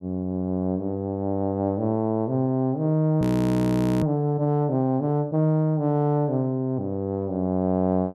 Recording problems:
frozen audio; at 3 s for 1 s

